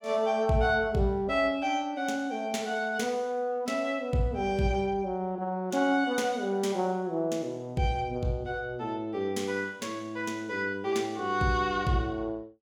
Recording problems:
none

